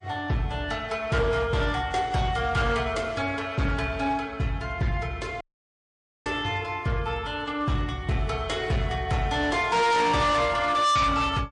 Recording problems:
lossy codec; MP3, log-spectral distance 2 dB, nothing above 9.5 kHz
distortion; hard clipping, signal-to-distortion ratio 7 dB
audio cutting out; at 5.5 s for 1 s

